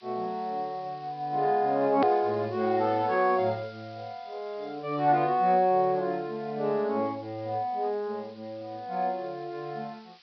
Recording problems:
low-pass filter; nothing above 5.5 kHz
hiss; SNR 27 dB
edit click; at 2 s

